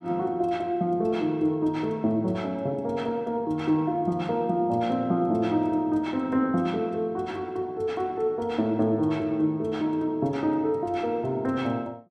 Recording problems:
none

